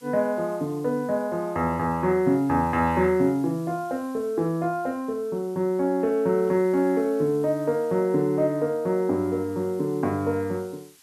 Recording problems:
hiss; slope +2 dB per octave, SNR 28 dB

